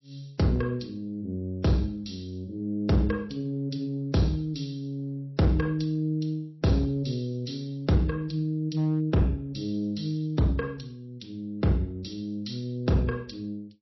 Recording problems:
lossy compression; MP3, log-spectral distance 3 dB, nothing above 5.7 kHz
distortion; hard clipping, uneven, signal-to-distortion ratio 11 dB

